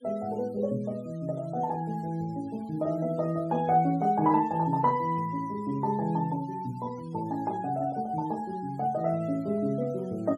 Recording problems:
denoising artefacts; signal-to-artefact ratio 27 dB

